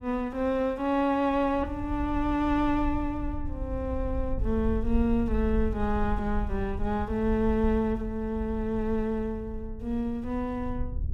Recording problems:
rumble; below 68 Hz, SNR 8 dB

